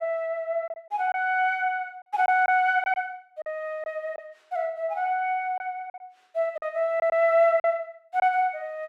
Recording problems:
packet loss; 6% of the sound replaced, filled with silence

